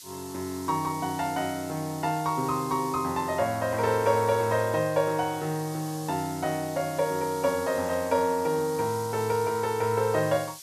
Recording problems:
background hiss; SNR 15 dB

